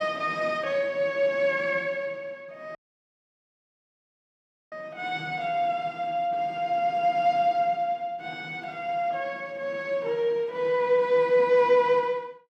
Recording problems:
dropout; at 3 s for 2 s

